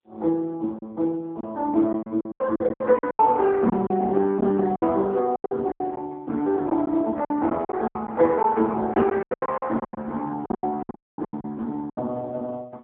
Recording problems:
telephone audio; 260 Hz to 2 kHz, AMR-NB
packet loss; 15% of the sound replaced, filled with silence
dropout; at 11 s

